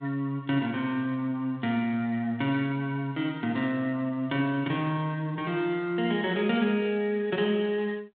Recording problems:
telephone audio; 170 Hz to 3.7 kHz, G.726

